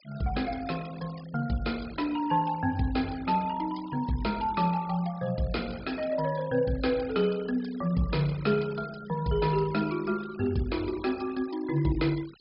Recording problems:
treble missing; nothing above 5.5 kHz
noise reduction artefacts; signal-to-artefact ratio 19 dB

